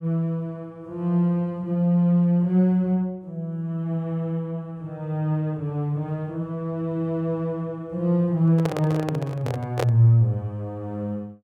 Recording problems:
handling noise; from 8.5 to 10 s; peak +2 dB vs average level

